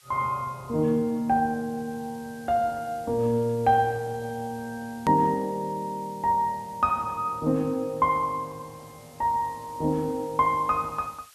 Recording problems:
hiss; slope +4 dB per octave, SNR 25 dB
hard cut with a click; at 5 s

